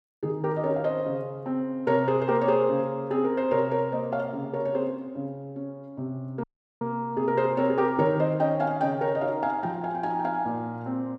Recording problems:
dropout; at 6.5 s

